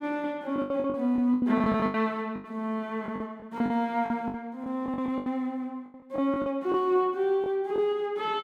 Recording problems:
packet loss; 14% of the sound replaced, filled with the last packet

